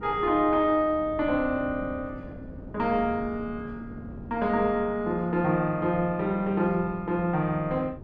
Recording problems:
wind on the microphone; below 280 Hz, SNR 17 dB

